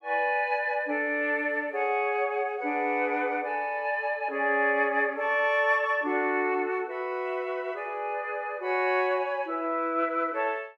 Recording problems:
none

